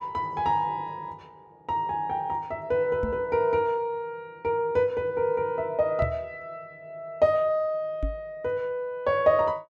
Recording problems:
knock on the microphone; at 3 s, at 6 s and at 8 s; peak 0 dB vs average level

